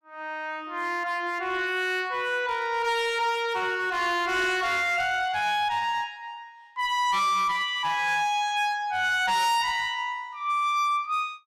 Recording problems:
distorted audio; hard clipping, uneven, signal-to-distortion ratio 11 dB

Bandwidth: 14.5 kHz